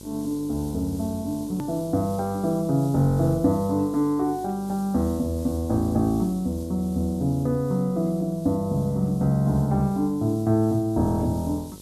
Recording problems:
mains hum; 50 Hz, harmonics up to 1.1 kHz, SNR 20 dB
background hiss; SNR 23 dB
edit click; at 1.5 s

